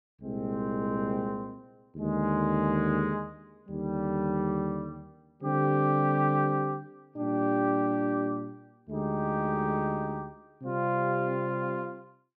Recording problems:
none

